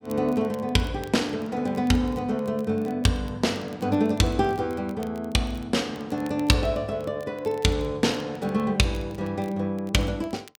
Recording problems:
crackling; vinyl, SNR 27 dB

